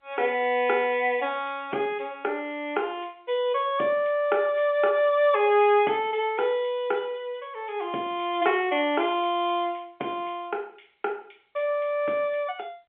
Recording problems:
phone line; 260 Hz to 3.4 kHz, G.711

